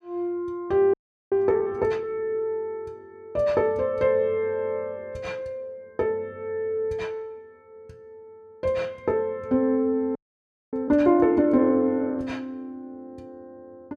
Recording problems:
frozen audio; at 1 s and at 10 s for 0.5 s

